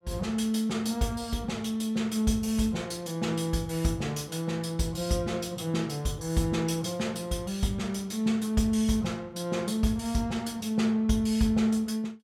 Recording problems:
none

